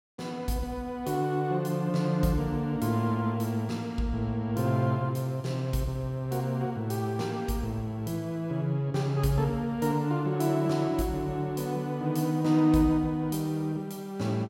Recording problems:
none

